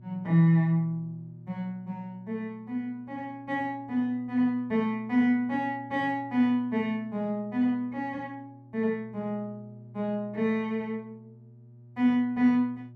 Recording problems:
electrical hum; 60 Hz, harmonics up to 600 Hz, SNR 21 dB

